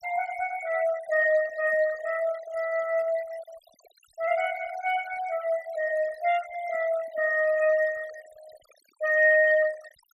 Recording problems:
noise reduction artefacts; signal-to-artefact ratio 19 dB

